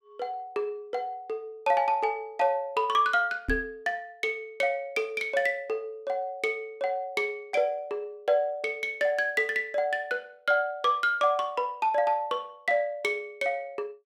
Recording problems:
microphone thump; at 3.5 s; peak 0 dB vs average level

